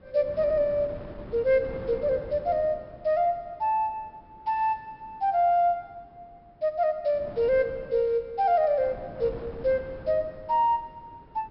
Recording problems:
treble missing; nothing above 5.4 kHz
wind noise; below 470 Hz, SNR 19 dB

